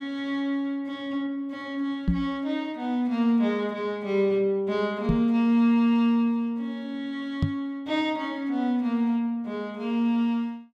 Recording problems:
microphone thump; at 2 s, at 5 s and at 7.5 s; peak +5 dB vs average level

